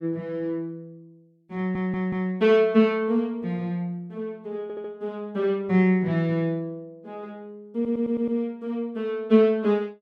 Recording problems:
audio stuttering; at 1.5 s, at 4.5 s and at 7.5 s

